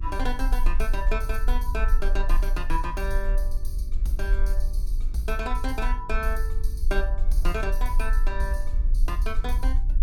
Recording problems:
electrical hum; 50 Hz, harmonics up to 350 Hz, SNR 16 dB
low-frequency rumble; below 42 Hz, strongest tone 24 Hz, SNR -4 dB

